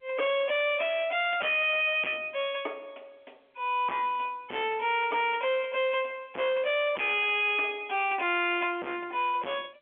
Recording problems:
phone line; 280 Hz to 3.3 kHz, G.711
distorted audio; hard clipping, signal-to-distortion ratio 6 dB

